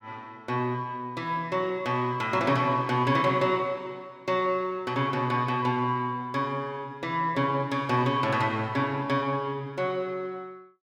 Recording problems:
none

